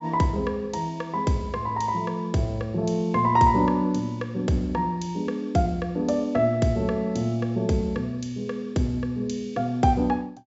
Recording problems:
treble cut off; nothing above 8 kHz

